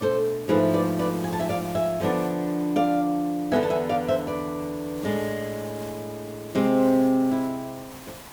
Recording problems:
hiss; SNR 18 dB

